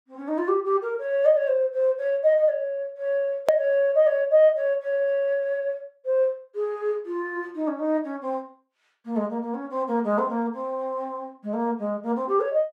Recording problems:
edit click; at 3.5 s

